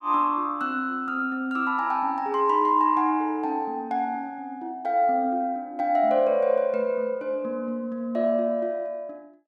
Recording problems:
none

